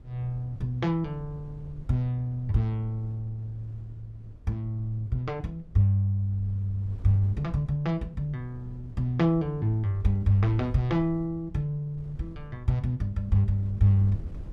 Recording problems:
wind noise; below 100 Hz, SNR 18 dB

